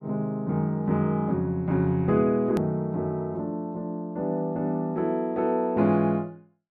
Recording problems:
click at an edit; at 2.5 s

